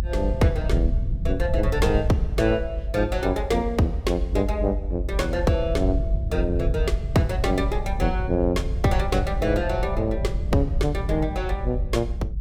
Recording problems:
low-frequency rumble; below 72 Hz, SNR 2 dB

